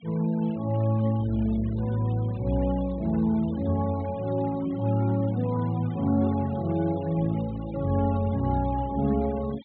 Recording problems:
treble cut off; nothing above 4 kHz
denoising artefacts; signal-to-artefact ratio 23 dB

